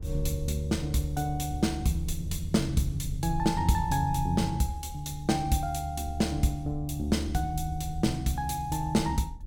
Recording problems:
rumble; below 80 Hz, SNR 12 dB

